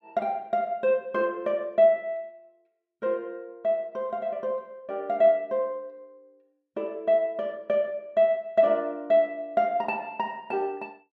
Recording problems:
none

